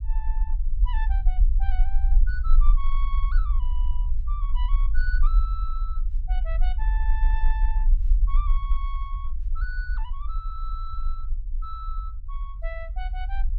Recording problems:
low-frequency rumble; below 42 Hz, strongest tone 22 Hz, SNR -13 dB

